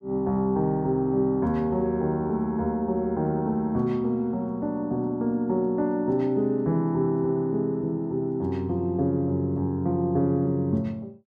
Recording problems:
none

